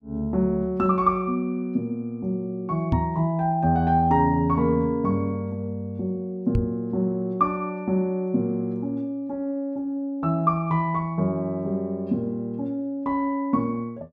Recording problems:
knock on the microphone; at 3 s and at 6.5 s; peak +5 dB vs average level

